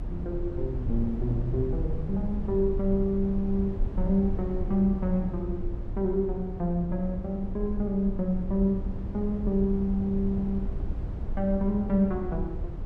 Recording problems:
low-frequency rumble; below 86 Hz, SNR 6 dB

